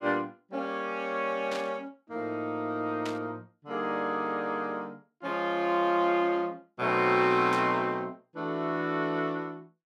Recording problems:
burst of static; at 1.5 s, at 3 s and at 7.5 s; peak -5 dB vs average level

